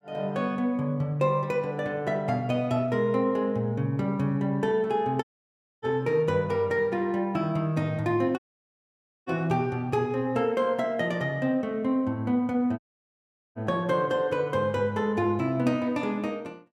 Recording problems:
audio cutting out; at 5 s for 0.5 s, at 8.5 s for 1 s and at 13 s for 1 s

